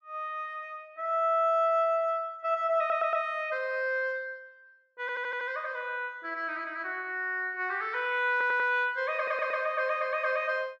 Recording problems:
stutter; 4 times, first at 3 s

